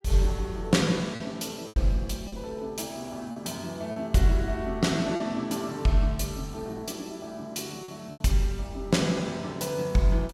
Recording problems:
packet loss; 4% of the sound replaced, filled with repeated pitch periods

